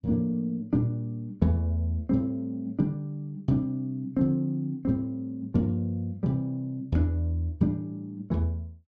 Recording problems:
none

